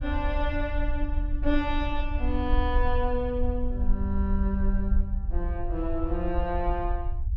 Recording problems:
rumble; below 60 Hz, SNR 0 dB

